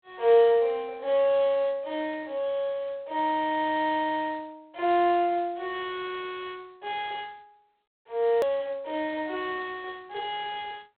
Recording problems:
telephone audio; 320 Hz to 3.4 kHz, G.726
click at an edit; at 8.5 s

